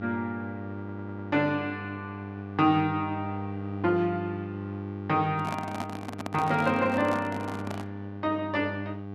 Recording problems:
electrical hum; 50 Hz, harmonics up to 1.2 kHz, SNR 9 dB
audio stuttering; at 1 s
handling noise; from 5.5 to 8 s; peak -2 dB vs average level

